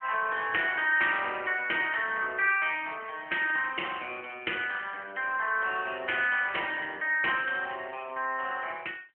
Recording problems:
telephone audio; 280 Hz to 3.2 kHz, AMR-NB

